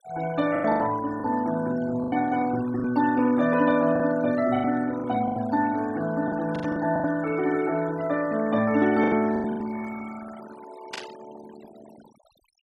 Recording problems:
noise reduction artefacts; signal-to-artefact ratio 19 dB
packet loss; 9% of the sound replaced, filled with the last packet
burst of static; at 6.5 s and at 11 s; peak -6 dB vs average level

